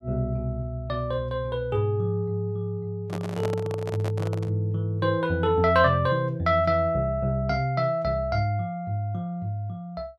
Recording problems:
handling noise; from 3 to 4.5 s; peak -3 dB vs average level

